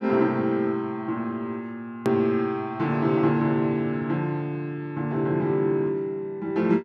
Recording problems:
edit click; at 2 s

